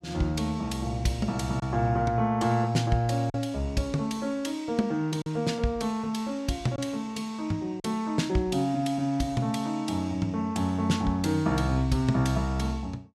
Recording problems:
lost packets; 1.2% of the sound replaced, filled with silence

